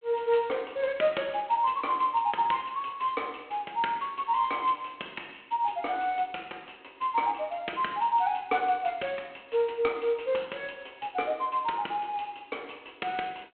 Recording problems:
telephone audio; 260 Hz to 3.4 kHz, G.726

